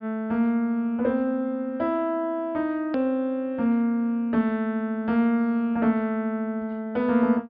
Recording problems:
treble missing; nothing above 5.5 kHz
hard cut with a click; at 3 s

